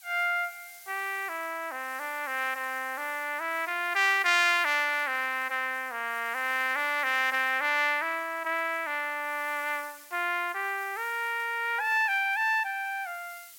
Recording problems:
background hiss; SNR 21 dB

